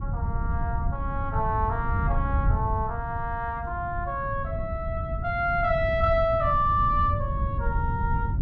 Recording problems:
wind on the microphone; below 110 Hz, SNR 3 dB

